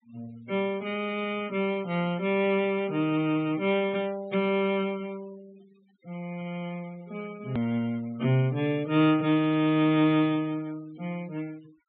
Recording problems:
treble cut off; nothing above 4 kHz
denoising artefacts; signal-to-artefact ratio 24 dB
click at an edit; at 7.5 s

